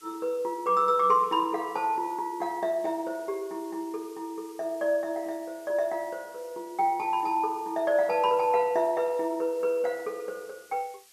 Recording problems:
hiss; slope +3 dB per octave, SNR 25 dB

